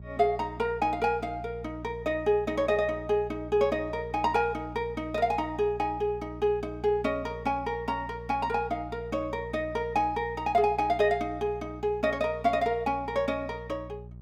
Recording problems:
electrical hum; 60 Hz, harmonics up to 420 Hz, SNR 15 dB

